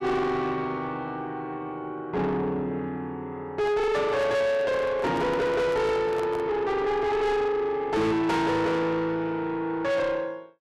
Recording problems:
distorted audio; soft clipping, signal-to-distortion ratio 7 dB
microphone handling noise; from 3.5 to 6.5 s; peak -3 dB vs average level

